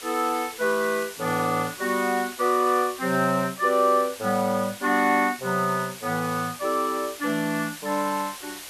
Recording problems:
background hiss; slope +1 dB per octave, SNR 14 dB

